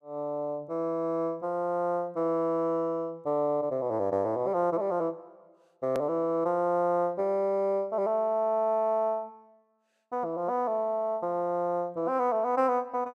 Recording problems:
click at an edit; at 6 s

